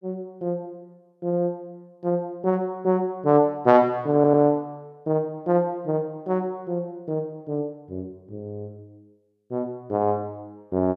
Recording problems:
audio stuttering; at 4 s

